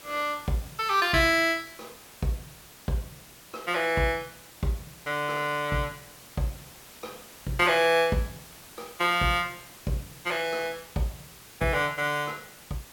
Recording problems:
hiss; slope -2 dB per octave, SNR 19 dB

